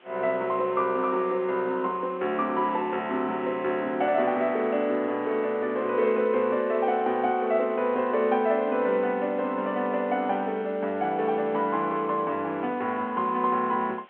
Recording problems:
phone line; 220 Hz to 3.4 kHz, G.711
hiss; SNR 28 dB

